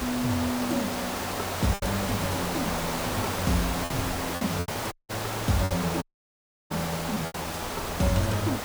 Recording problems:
hiss; SNR 1 dB
wind noise; below 130 Hz, SNR 16 dB
lost packets; 6% of the sound replaced, filled with repeated pitch periods
dropout; at 5 s and at 6 s for 0.5 s

